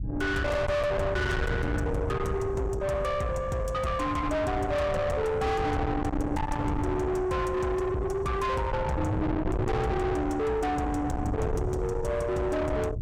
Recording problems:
distorted audio; soft clipping, signal-to-distortion ratio 6 dB
wind noise; below 550 Hz, SNR 4 dB

